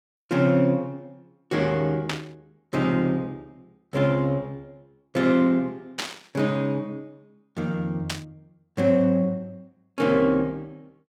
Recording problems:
burst of static; at 2 s, at 6 s and at 8 s; peak 0 dB vs average level

